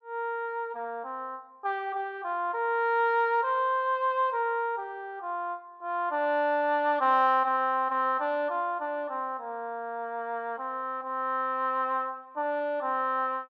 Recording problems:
none

